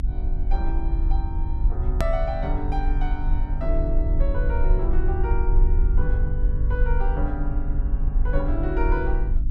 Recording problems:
hum; 50 Hz, harmonics up to 300 Hz, SNR 1 dB
low-frequency rumble; below 48 Hz, strongest tone 28 Hz, SNR -6 dB
hard cut with a click; at 2 s

